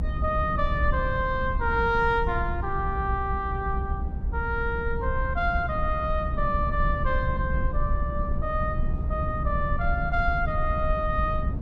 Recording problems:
low-frequency rumble; below 96 Hz, SNR 2 dB

